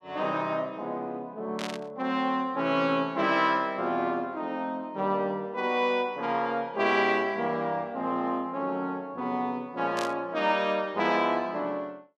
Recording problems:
static burst; at 1.5 s and at 10 s; peak -3 dB vs average level

